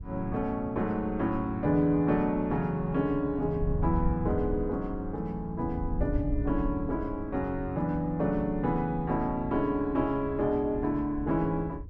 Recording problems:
wind noise; below 86 Hz, SNR 10 dB

